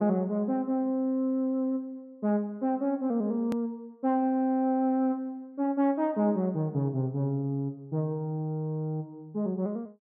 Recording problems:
click at an edit; at 3.5 s

